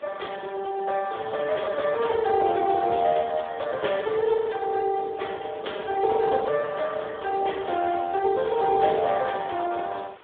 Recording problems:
phone line; 300 Hz to 3.5 kHz, Speex
hiss; SNR 27 dB

